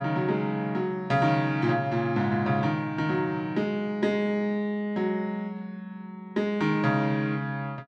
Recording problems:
none

